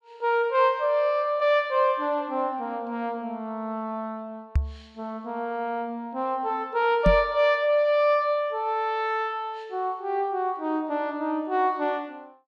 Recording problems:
microphone bump; at 4.5 s and at 7 s; peak +6 dB vs average level

